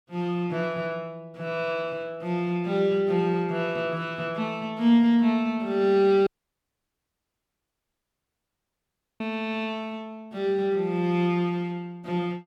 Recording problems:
dropout; at 6.5 s for 3 s

